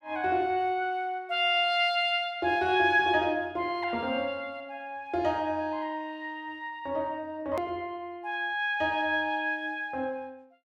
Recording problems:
hard cut with a click; at 7.5 s

